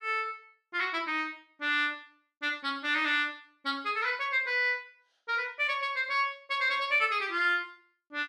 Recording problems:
none

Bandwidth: 13.5 kHz